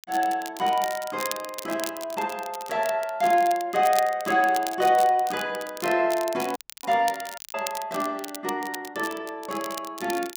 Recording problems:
crackle; vinyl, SNR 13 dB
dropout; at 6.5 s and at 7.5 s

